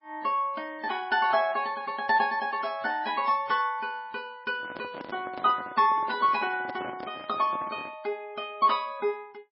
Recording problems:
codec artefacts; MP3, log-spectral distance 3 dB, nothing above 4.5 kHz
microphone handling noise; from 4.5 to 8 s; peak -7 dB vs average level

